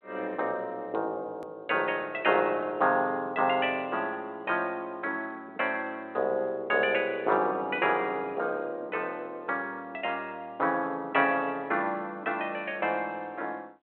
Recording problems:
phone line; 220 Hz to 3.3 kHz, G.726
hard cut with a click; at 1.5 s

